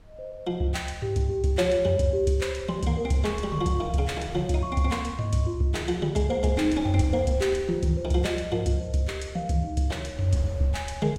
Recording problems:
wind noise; below 140 Hz, SNR 21 dB

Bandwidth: 16.5 kHz